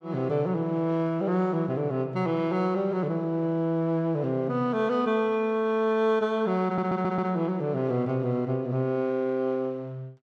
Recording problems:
stutter; at 6.5 s

